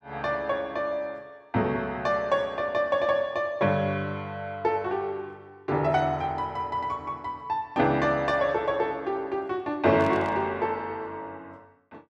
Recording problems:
static burst; at 10 s; peak -14 dB vs average level

